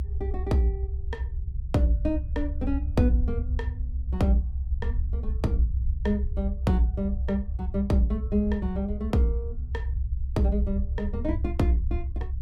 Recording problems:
rumble; below 70 Hz, SNR 3 dB

